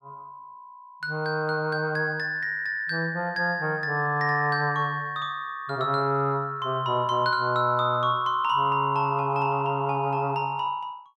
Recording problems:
none

